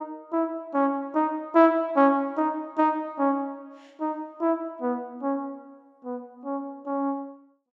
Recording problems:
none

